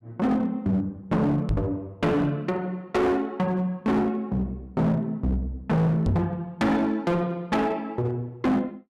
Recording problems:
distorted audio; hard clipping, signal-to-distortion ratio 7 dB
microphone bump; at 1.5 s and at 6 s; peak +5 dB vs average level

